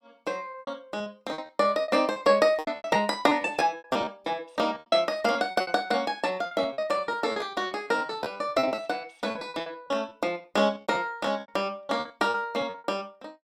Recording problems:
lost packets; 18% of the sound replaced, filled with repeated pitch periods

